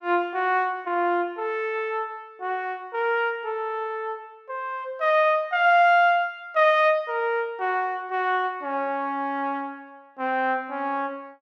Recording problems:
none

